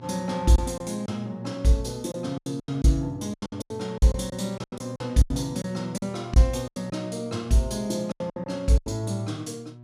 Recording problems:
hum; 60 Hz, harmonics up to 960 Hz, SNR 16 dB
lost packets; 13% of the sound replaced, filled with silence

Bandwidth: 15 kHz